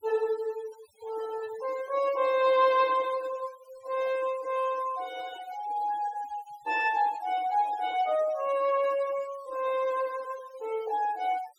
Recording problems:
denoising artefacts; signal-to-artefact ratio 19 dB

